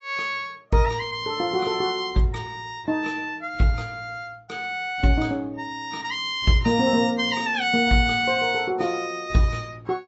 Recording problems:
codec artefacts; AAC, log-spectral distance 2 dB, nothing above 7.3 kHz

